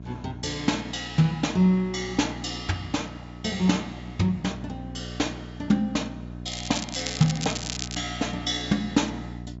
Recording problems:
treble cut off; nothing above 8 kHz
hum; 60 Hz, harmonics up to 720 Hz, SNR 12 dB
crackle; from 6.5 to 8 s; loose cable, SNR 6 dB

